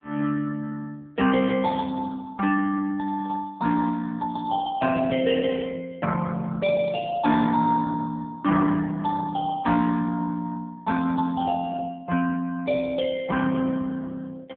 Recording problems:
phone line; 170 Hz to 3.5 kHz, AMR-NB

